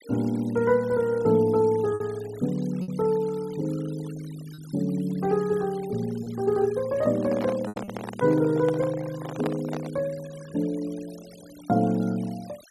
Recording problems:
denoising artefacts; signal-to-artefact ratio 22 dB
lost packets; 2% of the sound replaced, filled with repeated pitch periods
handling noise; from 7 to 10 s; peak -2 dB vs average level

